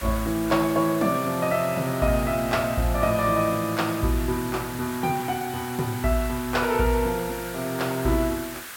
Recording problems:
background hiss; SNR 12 dB

